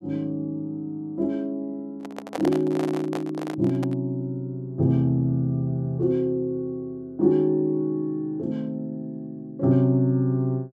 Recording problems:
microphone handling noise; from 2 to 4 s; peak -1 dB vs average level

